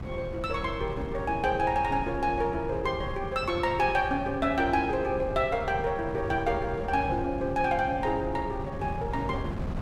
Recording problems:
wind on the microphone; below 220 Hz, SNR 9 dB

